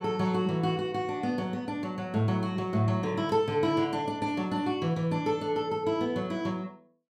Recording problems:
none

